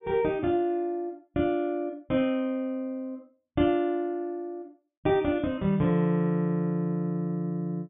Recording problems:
treble cut off; nothing above 3.7 kHz

